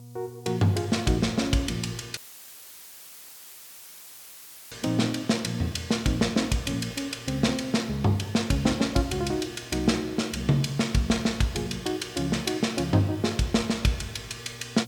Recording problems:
hum; 60 Hz, harmonics up to 720 Hz, SNR 23 dB
hiss; SNR 27 dB
audio cutting out; at 2 s for 2.5 s; filled with static

